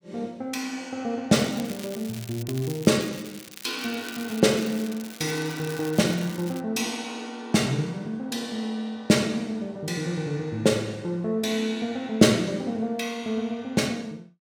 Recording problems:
crackling; from 1.5 to 6.5 s; loose cable, SNR 15 dB

